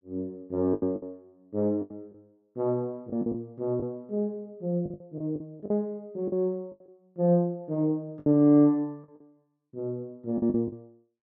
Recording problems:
packet loss; 9% of the sound replaced, filled with the last packet

